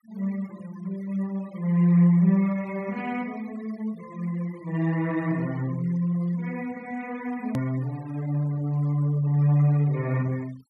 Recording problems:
denoising artefacts; signal-to-artefact ratio 24 dB
hard cut with a click; at 7.5 s

